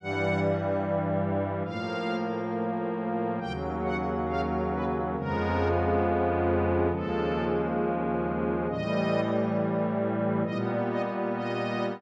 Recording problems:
none

